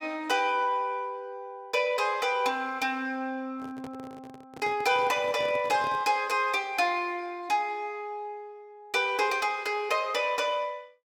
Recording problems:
handling noise; from 3.5 to 6 s; peak -10 dB vs average level

